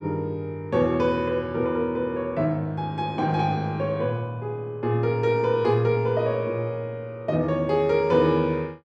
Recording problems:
none

